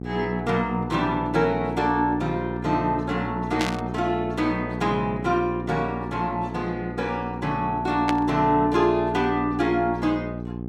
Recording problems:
hum; 60 Hz, harmonics up to 840 Hz, SNR 7 dB
static burst; at 3.5 s and at 8 s; peak +1 dB vs average level

